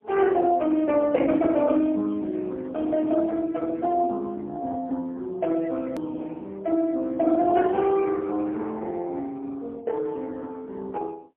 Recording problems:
telephone audio; 170 Hz to 3 kHz, AMR-NB, then MP3
click at an edit; at 6 s

